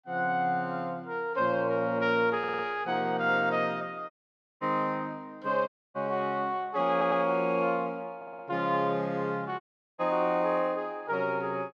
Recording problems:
stutter; at 2.5 s, at 7 s and at 8 s
audio cutting out; at 4 s for 0.5 s, at 5.5 s and at 9.5 s

